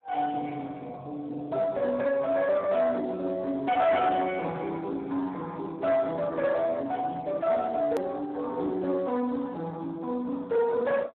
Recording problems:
telephone audio; 220 Hz to 3 kHz, Speex
distorted audio; soft clipping, signal-to-distortion ratio 11 dB
click at an edit; at 8 s

